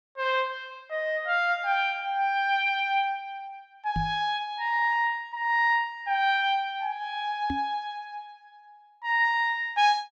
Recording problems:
microphone thump; at 4 s and at 7.5 s; peak -2 dB vs average level

